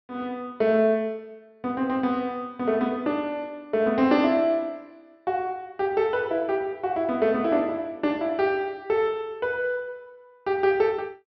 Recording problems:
low-pass filter; nothing above 5.8 kHz

